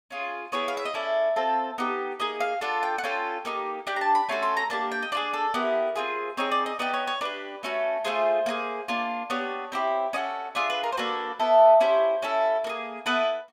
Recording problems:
none

